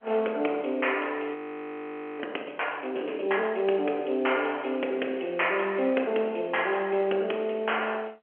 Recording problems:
telephone audio; 280 Hz to 3.2 kHz, G.711
audio freezing; at 1.5 s for 1 s

